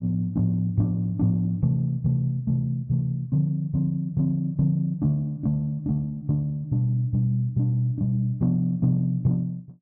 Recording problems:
none

